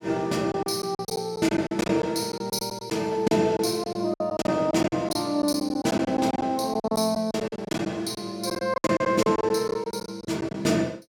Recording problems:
packet loss; 15% of the sound replaced, filled with silence

